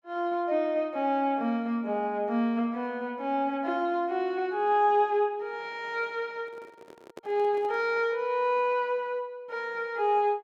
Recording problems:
microphone handling noise; from 6.5 to 8 s; peak -11 dB vs average level

